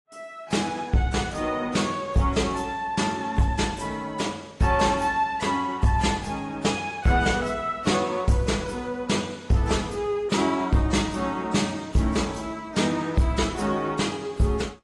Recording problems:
lossy codec; AAC, then AAC, log-spectral distance 3 dB, nothing above 10.1 kHz
distorted audio; soft clipping, signal-to-distortion ratio 12 dB

